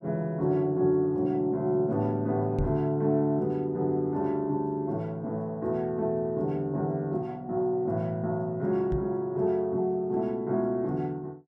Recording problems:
knock on the microphone; at 2.5 s and at 9 s; peak +1 dB vs average level

